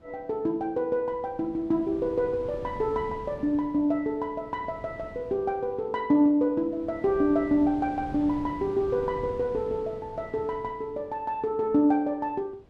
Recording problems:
wind on the microphone; below 380 Hz, SNR 17 dB

